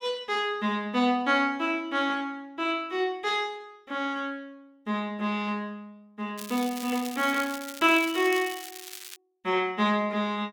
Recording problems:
crackling; from 6.5 to 9 s; loose cable, SNR 13 dB

